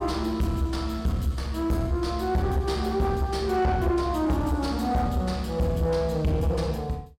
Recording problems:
distorted audio; soft clipping, signal-to-distortion ratio 10 dB

